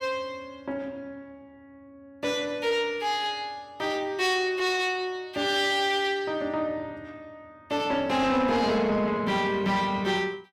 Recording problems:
distortion; soft clipping, signal-to-distortion ratio 12 dB

